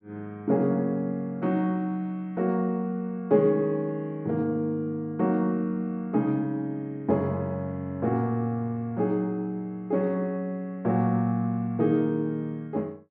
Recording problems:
none

